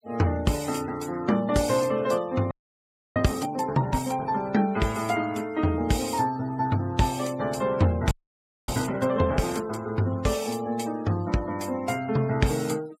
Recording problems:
noise reduction artefacts; signal-to-artefact ratio 21 dB
audio freezing; at 2.5 s for 0.5 s and at 8 s for 0.5 s

